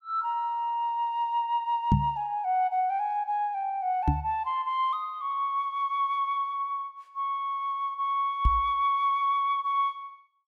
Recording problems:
knock on the microphone; at 2 s, at 4 s and at 8.5 s; peak +8 dB vs average level

